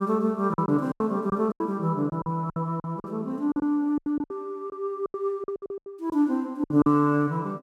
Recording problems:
lost packets; 14% of the sound replaced, filled with silence

